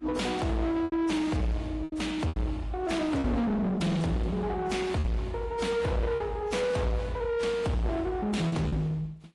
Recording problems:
lossy compression; Vorbis, then AAC, log-spectral distance 2 dB, nothing above 11 kHz
distortion; soft clipping, signal-to-distortion ratio 7 dB
lost packets; 5% of the sound replaced, filled with repeated pitch periods

